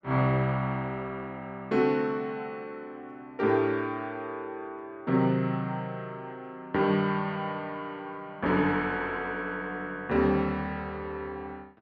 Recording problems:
none

